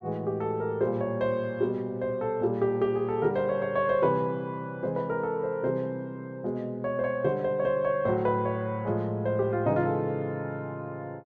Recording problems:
none

